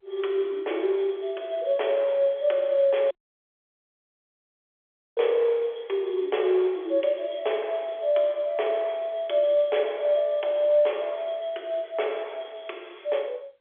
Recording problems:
phone line; 320 Hz to 3.4 kHz, G.711
dropout; at 3 s for 2 s

